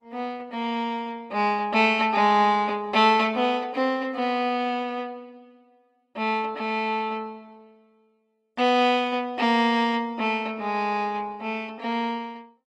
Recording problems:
lossy compression; Opus, log-spectral distance 2 dB

